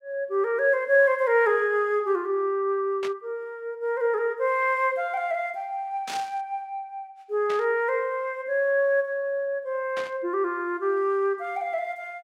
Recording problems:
burst of static; 4 times, first at 3 s; peak -6 dB vs average level

